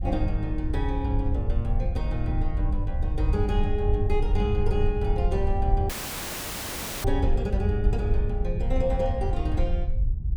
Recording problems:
rumble; below 72 Hz, SNR -2 dB
audio cutting out; at 6 s for 1 s

